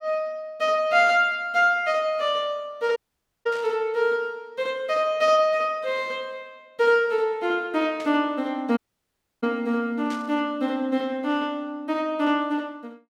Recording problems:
burst of static; 4 times, first at 1 s; peak -13 dB vs average level
dropout; at 3 s and at 9 s for 0.5 s

